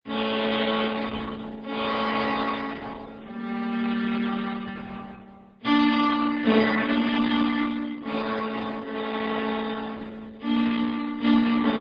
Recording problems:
codec artefacts; MP3, then Opus, log-spectral distance 5 dB

